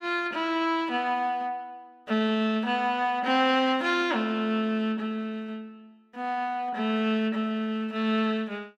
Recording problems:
none

